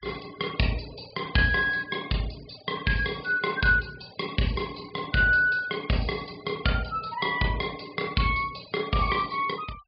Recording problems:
treble cut off; nothing above 5.1 kHz
noise reduction artefacts; signal-to-artefact ratio 21 dB

